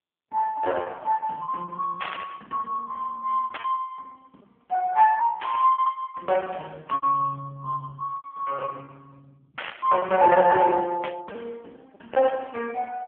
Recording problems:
phone line; 280 Hz to 3.1 kHz, AMR-NB
lost packets; 10% of the sound replaced, filled with repeated pitch periods
static burst; 5 times, first at 2 s; peak -2 dB vs average level

